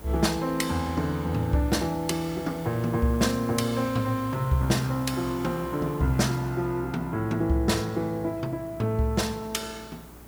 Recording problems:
hum; 60 Hz, harmonics up to 420 Hz, SNR 23 dB
background hiss; slope -6 dB per octave, SNR 19 dB

